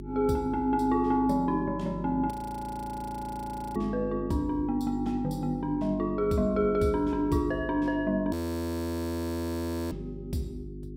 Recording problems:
electrical hum; 50 Hz, harmonics up to 400 Hz, SNR 11 dB
audio freezing; at 2.5 s for 1.5 s and at 8.5 s for 1.5 s

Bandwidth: 16 kHz